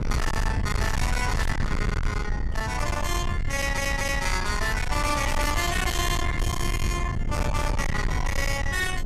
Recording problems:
distorted audio; soft clipping, signal-to-distortion ratio 6 dB
rumble; below 130 Hz, SNR 2 dB
audio stuttering; at 3.5 s

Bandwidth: 14 kHz